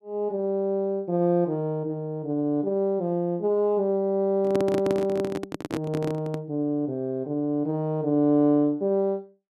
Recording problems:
handling noise; from 4.5 to 6.5 s; peak -1 dB vs average level

